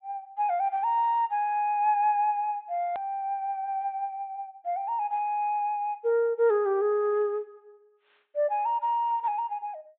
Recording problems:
treble missing; nothing above 4 kHz
click at an edit; at 3 s

